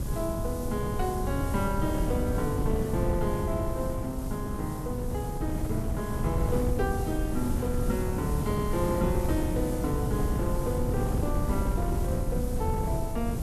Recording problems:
hum; 60 Hz, harmonics up to 720 Hz, SNR 15 dB
background hiss; SNR 13 dB
low-frequency rumble; below 130 Hz, SNR 10 dB
wind noise; below 180 Hz, SNR 0 dB

